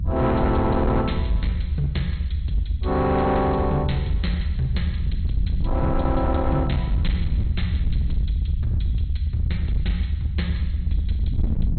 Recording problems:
codec artefacts; MP2, log-spectral distance 2 dB, nothing above 4.2 kHz
distortion; hard clipping, signal-to-distortion ratio 11 dB
rumble; below 82 Hz, SNR 0 dB

